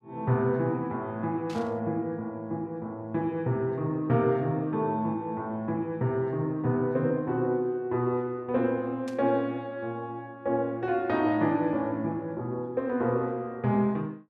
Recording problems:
burst of static; at 1.5 s and at 9 s; peak -12 dB vs average level

